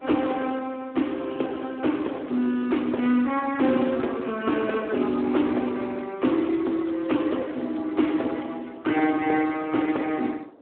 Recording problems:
phone line; 220 Hz to 3.3 kHz, Speex
wind on the microphone; below 620 Hz, SNR 24 dB

